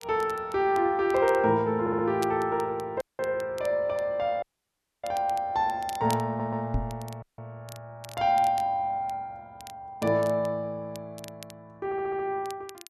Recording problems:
crackling; vinyl, SNR 21 dB
audio stuttering; at 2 s, at 6.5 s and at 12 s
dropout; at 3 s, at 4.5 s for 0.5 s and at 7 s
microphone thump; at 6.5 s; peak +1 dB vs average level

